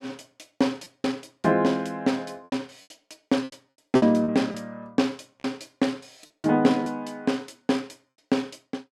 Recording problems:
lost packets; 6% of the sound replaced, filled with repeated pitch periods

